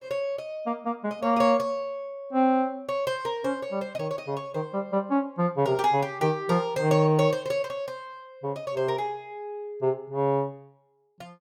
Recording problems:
none

